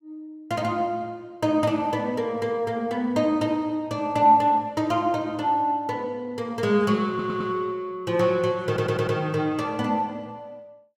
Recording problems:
audio stuttering; at 7 s and at 8.5 s

